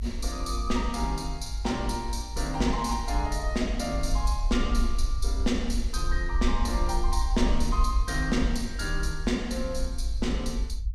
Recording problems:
rumble; below 52 Hz, SNR 1 dB

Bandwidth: 14.5 kHz